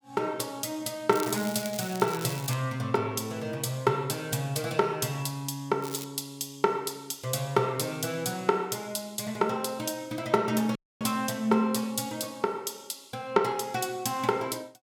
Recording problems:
crackle; from 1 to 2.5 s and at 6 s; loose cable, SNR 11 dB
dropout; at 11 s

